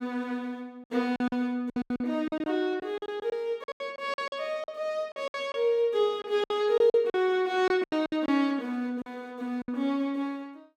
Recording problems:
packet loss; 13% of the sound replaced, filled with silence

